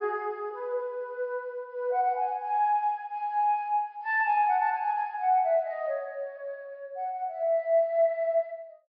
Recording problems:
treble missing; nothing above 5.5 kHz

